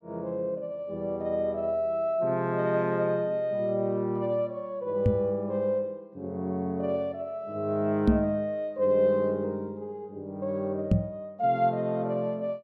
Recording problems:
microphone thump; at 5 s, at 8 s and at 11 s; peak +9 dB vs average level

